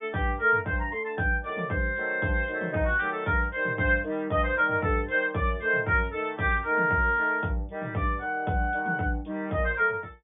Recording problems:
treble missing; nothing above 3.6 kHz

